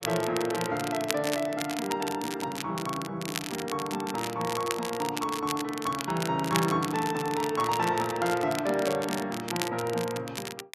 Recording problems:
crackling; vinyl, SNR 7 dB

